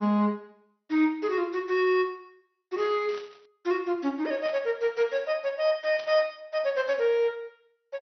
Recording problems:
codec artefacts; MP2, log-spectral distance 2 dB, nothing above 5 kHz
burst of static; at 3 s, at 4.5 s and at 6 s; peak -12 dB vs average level

